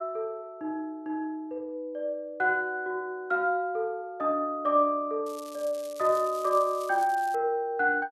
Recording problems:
crackle; from 5.5 to 7.5 s; loose cable, SNR 20 dB

